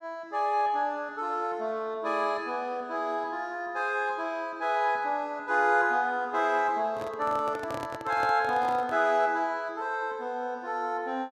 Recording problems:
microphone handling noise; from 7 to 9 s; peak -6 dB vs average level

